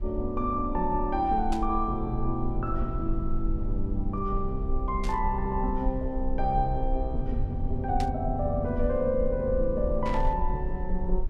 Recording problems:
rumble; below 46 Hz, strongest tone 18 Hz, SNR 5 dB
burst of static; 4 times, first at 1.5 s; peak -6 dB vs average level

